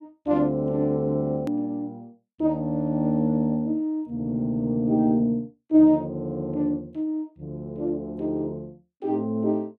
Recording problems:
click at an edit; at 1.5 s

